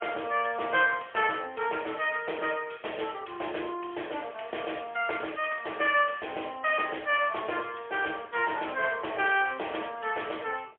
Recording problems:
phone line; 340 Hz to 3.2 kHz, AMR-NB, then MP3

